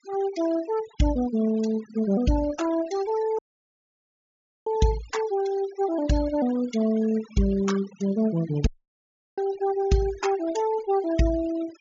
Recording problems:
treble cut off; nothing above 7.2 kHz
denoising artefacts; signal-to-artefact ratio 17 dB
dropout; at 3.5 s for 1.5 s and at 8.5 s for 0.5 s

